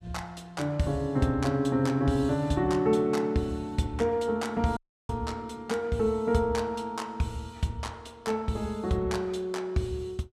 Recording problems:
dropout; at 5 s

